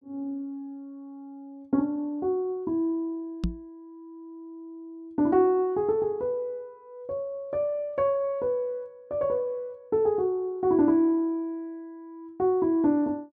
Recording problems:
microphone bump; at 3.5 s; peak +2 dB vs average level

